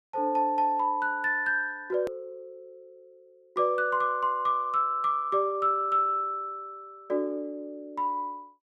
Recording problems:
click at an edit; at 2 s

